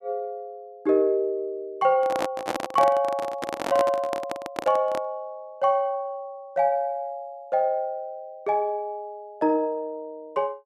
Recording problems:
handling noise; from 2 to 5 s; peak +2 dB vs average level

